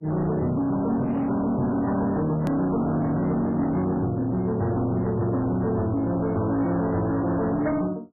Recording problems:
lossy compression; MP3, log-spectral distance 2 dB, nothing above 13.1 kHz
distorted audio; hard clipping, signal-to-distortion ratio 8 dB
click at an edit; at 2.5 s

